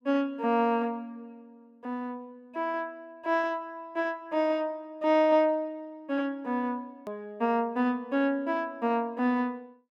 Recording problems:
edit click; at 7 s

